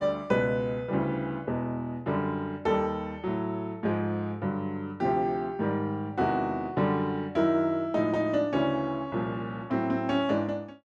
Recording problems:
none

